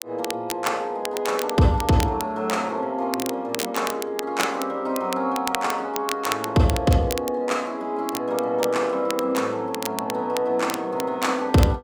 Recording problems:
crackling; vinyl, SNR 10 dB

